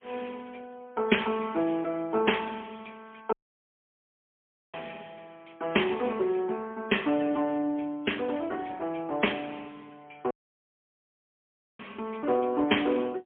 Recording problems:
telephone audio; 220 Hz to 3.3 kHz, AMR-NB, then MP3
dropout; at 3.5 s for 1.5 s and at 10 s for 1.5 s

